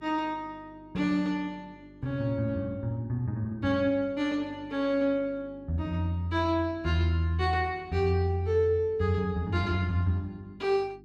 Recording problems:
mains hum; 50 Hz, harmonics up to 400 Hz, SNR 24 dB

